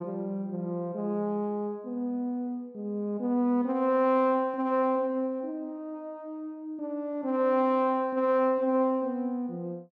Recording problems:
none

